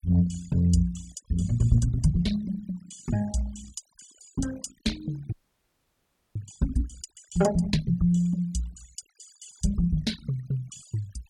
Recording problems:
noise reduction artefacts; signal-to-artefact ratio 19 dB
frozen audio; at 5.5 s for 1 s

